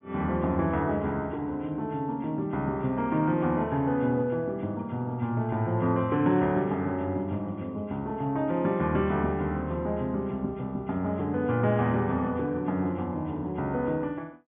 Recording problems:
treble cut off; nothing above 3.5 kHz

